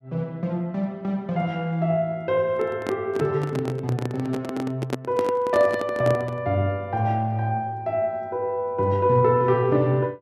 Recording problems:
handling noise; from 2.5 to 6.5 s; peak +1 dB vs average level

